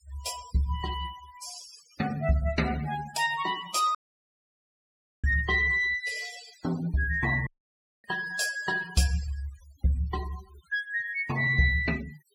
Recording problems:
denoising artefacts; signal-to-artefact ratio 15 dB
dropout; at 4 s for 1.5 s and at 7.5 s for 0.5 s

